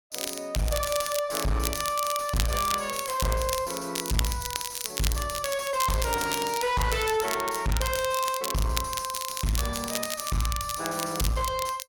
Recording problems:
distortion; soft clipping, signal-to-distortion ratio 6 dB
crackle; vinyl, SNR 5 dB

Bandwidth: 17 kHz